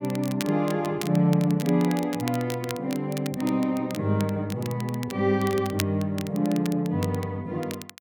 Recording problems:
crackle; vinyl, SNR 14 dB

